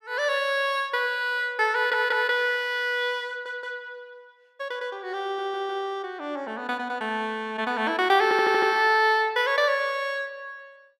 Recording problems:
audio stuttering; 4 times, first at 2 s

